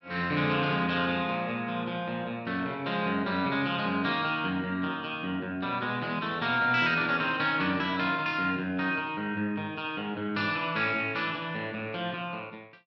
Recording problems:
none

